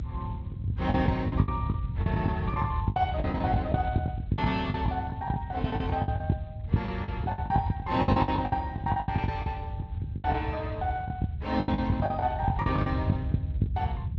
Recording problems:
codec artefacts; Speex, log-spectral distance 2 dB
rumble; below 160 Hz, SNR 0 dB
lost packets; 18% of the sound replaced, filled with the last packet

